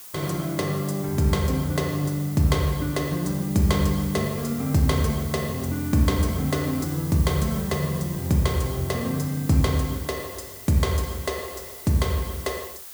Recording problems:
hiss; slope 0 dB per octave, SNR 13 dB

